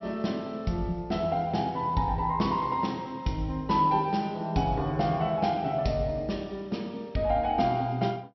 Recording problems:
treble missing; nothing above 5.6 kHz

